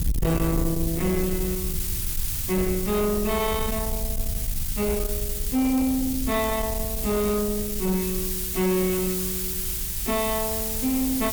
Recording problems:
distortion; soft clipping, signal-to-distortion ratio 9 dB
background hiss; SNR 2 dB
wind on the microphone; below 86 Hz, SNR 7 dB
crackling; from 5.5 to 7 s and at 7 s; loose cable, SNR 17 dB

